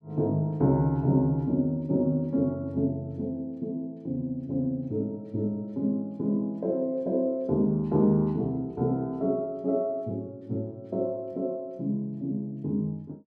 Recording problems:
none

